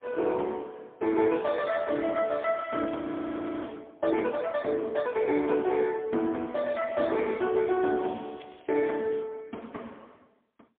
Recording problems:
phone line; 220 Hz to 3 kHz, AMR-NB, then MP3
crackle; from 1.5 to 4 s and from 7.5 to 9 s; loose cable, SNR 27 dB
frozen audio; at 3 s for 0.5 s

